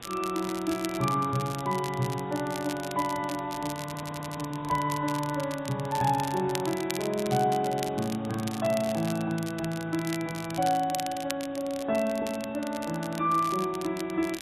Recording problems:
lossy codec; AAC, log-spectral distance 9 dB
background hiss; SNR 19 dB
crackling; vinyl, SNR 12 dB
audio stuttering; at 4 s

